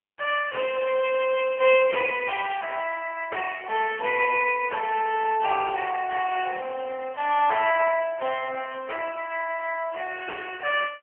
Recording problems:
phone line; 340 Hz to 3.1 kHz, AMR-NB

